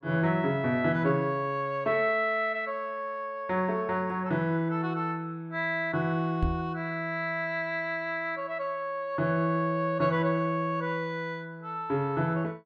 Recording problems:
microphone bump; at 6.5 s; peak +3 dB vs average level

